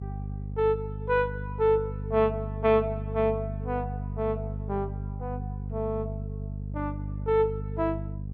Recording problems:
hum; 50 Hz, harmonics up to 450 Hz, SNR 6 dB

